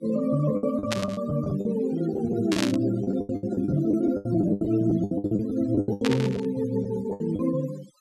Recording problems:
denoising artefacts; signal-to-artefact ratio 23 dB
lost packets; 17% of the sound replaced, filled with the last packet
static burst; at 1 s, at 2.5 s and at 6 s; peak +2 dB vs average level

